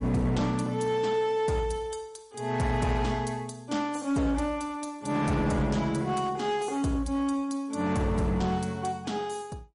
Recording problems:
lossy compression; MP3, log-spectral distance 2 dB, nothing above 10.4 kHz
distortion; hard clipping, uneven, signal-to-distortion ratio 11 dB

